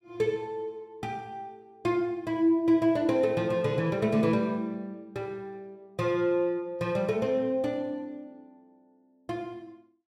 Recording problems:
none

